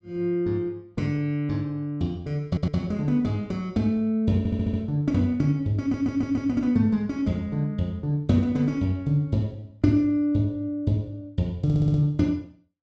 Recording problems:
audio stuttering; 4 times, first at 2.5 s

